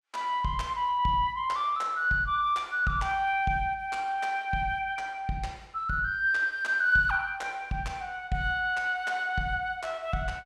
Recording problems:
none

